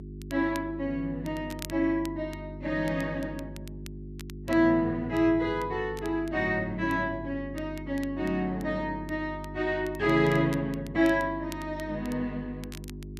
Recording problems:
hum; 50 Hz, harmonics up to 400 Hz, SNR 12 dB
crackling; vinyl, SNR 22 dB

